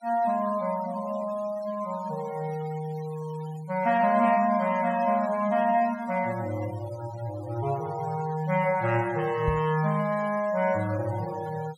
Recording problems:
denoising artefacts; signal-to-artefact ratio 19 dB
knock on the microphone; at 9.5 s; peak +1 dB vs average level

